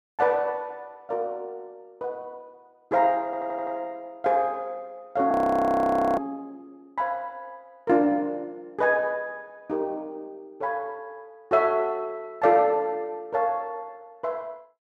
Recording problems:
audio stuttering; at 3.5 s
audio freezing; at 5.5 s for 1 s

